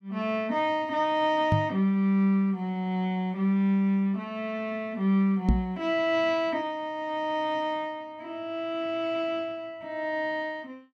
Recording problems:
microphone thump; at 1.5 s and at 5.5 s; peak +7 dB vs average level

